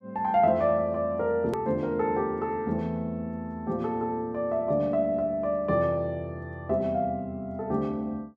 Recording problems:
click at an edit; at 1.5 s

